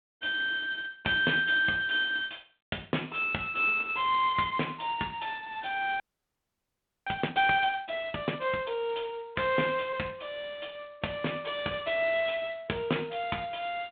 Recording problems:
telephone audio; 220 Hz to 3.5 kHz, G.726
audio freezing; at 6 s for 1 s

